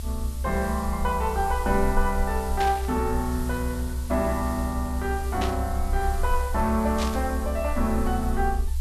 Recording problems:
background hiss; slope +3 dB per octave, SNR 15 dB
rumble; below 68 Hz, SNR 3 dB
burst of static; at 2.5 s, at 5.5 s and at 7 s; peak -1 dB vs average level

